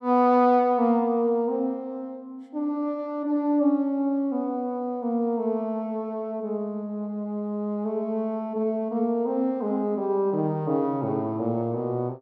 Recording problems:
none

